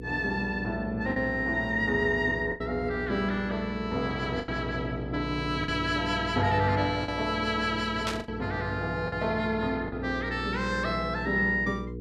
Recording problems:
hum; 60 Hz, harmonics up to 480 Hz, SNR 9 dB
packet loss; 4% of the sound replaced, filled with the last packet
burst of static; at 8 s; peak 0 dB vs average level

